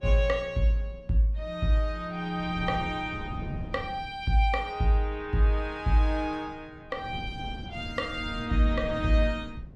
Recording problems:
wind on the microphone; below 190 Hz, SNR 12 dB

